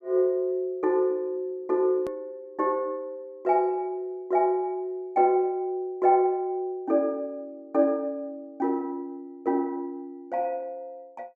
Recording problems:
hard cut with a click; at 2 s

